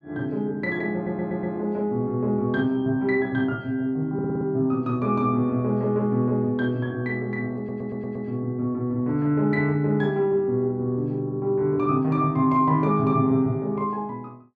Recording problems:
audio stuttering; at 1 s, at 4 s and at 7.5 s

